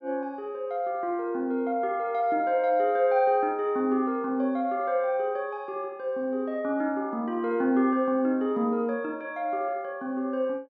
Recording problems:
treble cut off; nothing above 8 kHz

